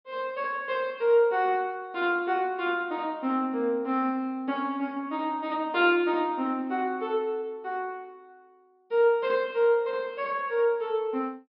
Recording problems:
low-pass filter; nothing above 5.5 kHz

